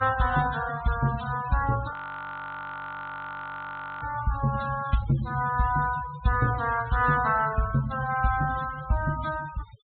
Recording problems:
low-pass filter; nothing above 4 kHz
denoising artefacts; signal-to-artefact ratio 15 dB
audio freezing; at 2 s for 2 s

